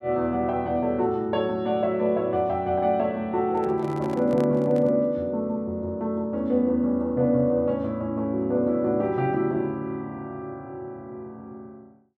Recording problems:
microphone handling noise; from 3.5 to 5 s; peak -8 dB vs average level

